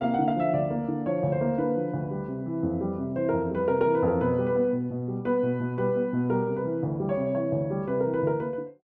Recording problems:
none

